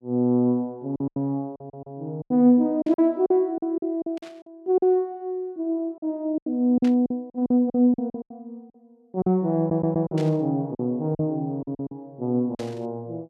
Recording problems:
packet loss; 11% of the sound replaced, filled with silence
stutter; at 1.5 s and at 9.5 s
burst of static; 5 times, first at 3 s; peak -12 dB vs average level

